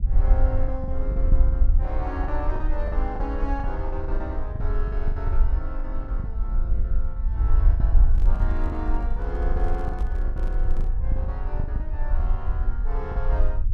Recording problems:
rumble; below 52 Hz, SNR -9 dB
packet loss; 11% of the sound replaced, filled with the last packet
handling noise; from 8 to 11 s; peak -4 dB vs average level

